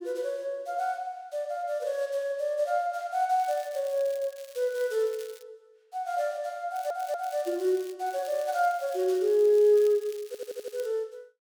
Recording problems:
crackling; 4 times, first at 3.5 s; loose cable, SNR 22 dB
stutter; at 6.5 s and at 10 s

